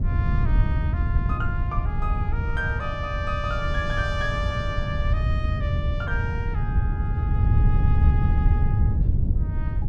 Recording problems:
wind noise; below 110 Hz, SNR -7 dB

